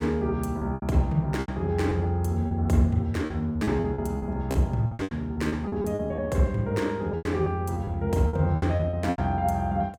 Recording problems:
packet loss; 13% of the sound replaced, filled with repeated pitch periods

